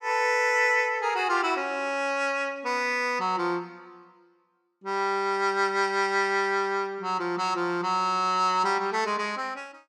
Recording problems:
none

